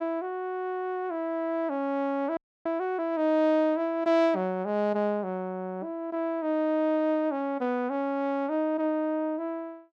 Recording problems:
frozen audio; at 2.5 s

